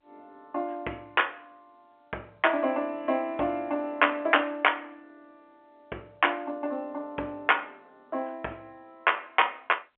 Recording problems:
telephone audio; 300 Hz to 3.3 kHz, G.711

